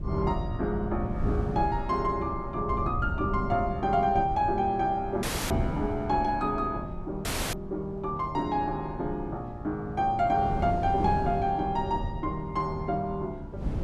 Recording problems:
low-frequency rumble; below 120 Hz, SNR 10 dB
wind on the microphone; below 250 Hz, SNR 10 dB
audio cutting out; at 5 s and at 7.5 s

